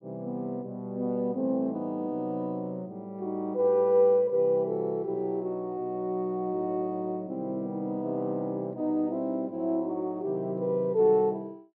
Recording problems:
none

